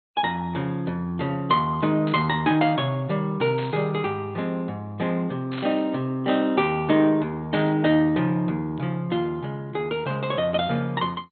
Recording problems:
lossy compression; MP2, log-spectral distance 2 dB, nothing above 3.5 kHz
burst of static; 4 times, first at 2 s; peak -8 dB vs average level

